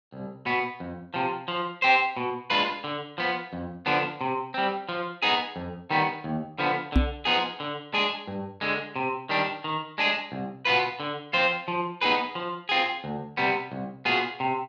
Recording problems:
knock on the microphone; at 7 s; peak +8 dB vs average level

